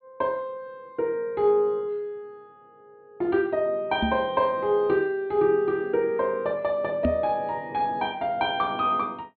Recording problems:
treble cut off; nothing above 4.4 kHz
microphone bump; at 4 s and at 7 s; peak +3 dB vs average level

